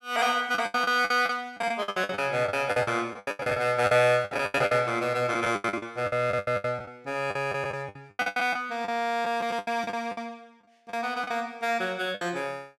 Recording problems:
lost packets; 19% of the sound replaced, filled with the last packet

